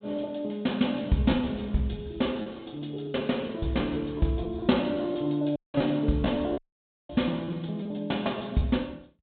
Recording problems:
treble cut off; nothing above 4 kHz
packet loss; 7% of the sound replaced, filled with repeated pitch periods
dropout; at 5.5 s and at 6.5 s for 0.5 s

